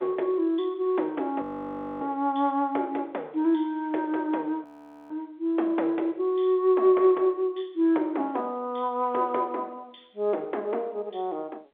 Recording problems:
phone line; 300 Hz to 3.6 kHz, G.711
frozen audio; at 1.5 s for 0.5 s and at 4.5 s

